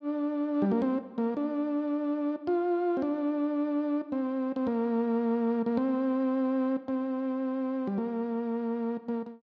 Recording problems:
none

